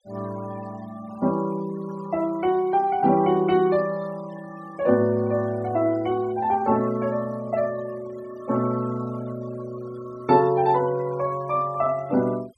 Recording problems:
denoising artefacts; signal-to-artefact ratio 22 dB

